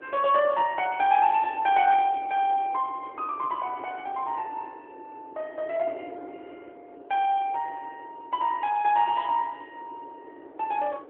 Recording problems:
phone line; 260 Hz to 3.5 kHz, AMR-NB
wind noise; below 570 Hz, SNR 20 dB

